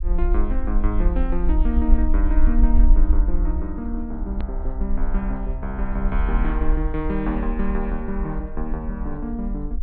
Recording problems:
treble cut off; nothing above 4.4 kHz
low-frequency rumble; below 48 Hz, SNR -3 dB
click at an edit; at 4.5 s

